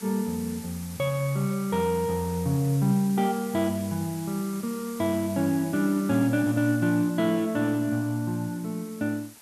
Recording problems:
hiss; slope 0 dB per octave, SNR 17 dB

